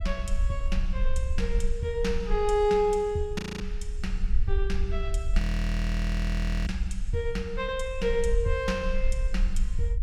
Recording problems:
low-frequency rumble; below 52 Hz, SNR 1 dB
audio freezing; at 3.5 s and at 5.5 s for 1.5 s

